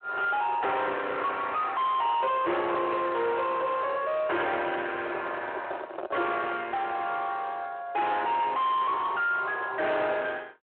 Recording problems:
telephone audio; 300 Hz to 3.7 kHz, Speex
distortion; soft clipping, signal-to-distortion ratio 6 dB
microphone handling noise; from 5 to 6.5 s; peak -3 dB vs average level

